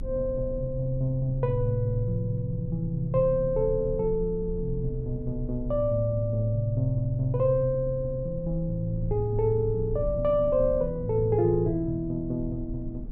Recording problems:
low-frequency rumble; below 66 Hz, strongest tone 32 Hz, SNR 12 dB

